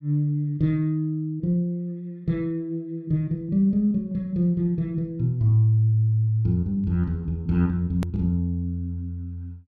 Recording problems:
edit click; at 8 s

